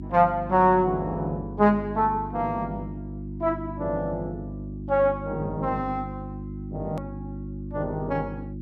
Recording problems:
hum; 50 Hz, harmonics up to 350 Hz, SNR 10 dB
hard cut with a click; at 7 s

